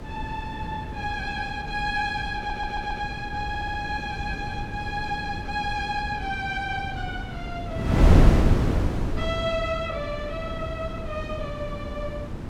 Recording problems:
hum; 50 Hz, harmonics up to 550 Hz, SNR 18 dB
wind on the microphone; below 230 Hz, SNR -2 dB
audio stuttering; at 2.5 s and at 3.5 s

